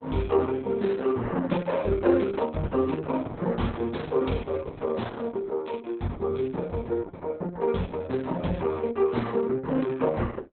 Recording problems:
lossy compression; Opus, log-spectral distance 3 dB, nothing above 4 kHz

